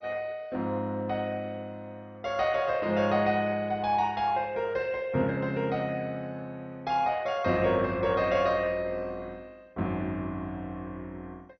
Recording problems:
codec artefacts; MP2, log-spectral distance 2 dB, nothing above 5.2 kHz

